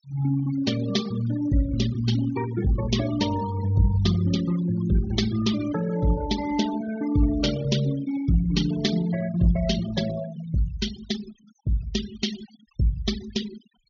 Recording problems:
treble cut off; nothing above 6.8 kHz
noise reduction artefacts; signal-to-artefact ratio 12 dB

